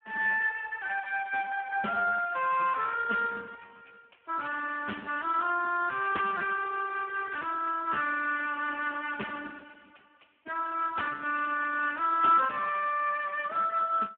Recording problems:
phone line; 240 Hz to 2.9 kHz, Speex

